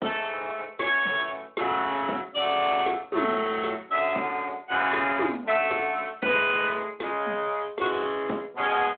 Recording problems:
phone line; 190 Hz to 3.9 kHz, Speex

